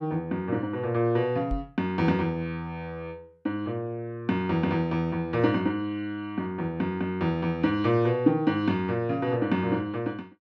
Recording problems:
microphone bump; at 1.5 s; peak -2 dB vs average level

